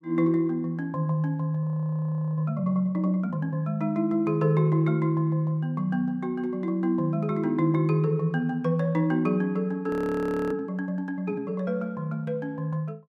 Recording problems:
frozen audio; at 1.5 s for 0.5 s and at 10 s for 0.5 s

